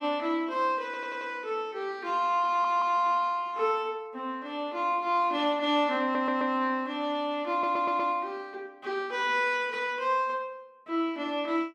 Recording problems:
audio stuttering; 4 times, first at 1 s

